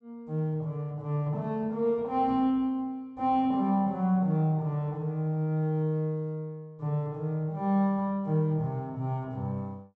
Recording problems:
treble cut off; nothing above 8 kHz

